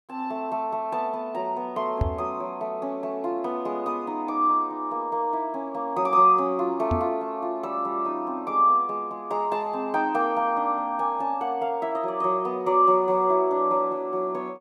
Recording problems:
knock on the microphone; at 2 s and at 7 s; peak +4 dB vs average level

